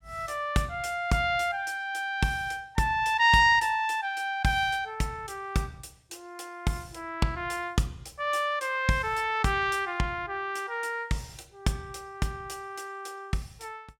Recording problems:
none

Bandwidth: 17 kHz